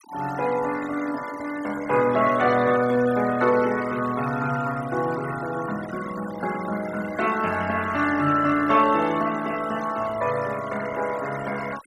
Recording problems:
denoising artefacts; signal-to-artefact ratio 15 dB

